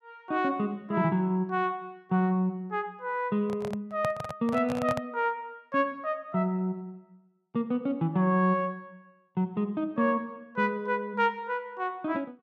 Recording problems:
microphone handling noise; from 3.5 to 5 s; peak -1 dB vs average level

